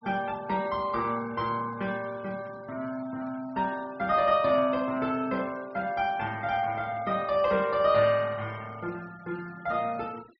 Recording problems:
treble cut off; nothing above 5.7 kHz
noise reduction artefacts; signal-to-artefact ratio 22 dB

